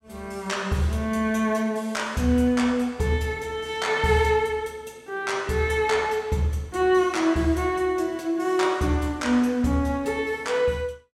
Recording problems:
none

